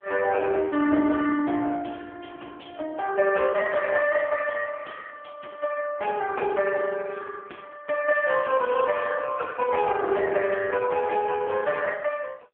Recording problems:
phone line; 220 Hz to 3.2 kHz, AMR-NB

